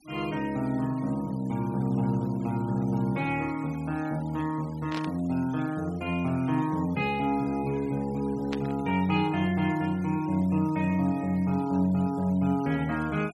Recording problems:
denoising artefacts; signal-to-artefact ratio 23 dB
burst of static; at 5 s and at 8.5 s; peak -5 dB vs average level

